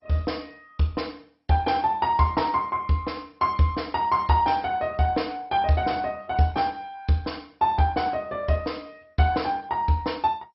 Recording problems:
lossy codec; MP2, log-spectral distance 3 dB, nothing above 5.5 kHz

